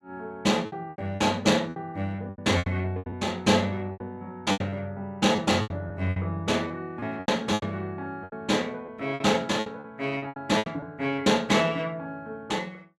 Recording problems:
lost packets; 13% of the sound replaced, filled with repeated pitch periods

